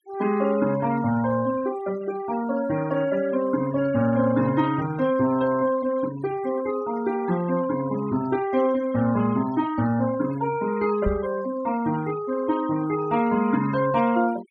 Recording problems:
denoising artefacts; signal-to-artefact ratio 17 dB
knock on the microphone; at 11 s; peak 0 dB vs average level

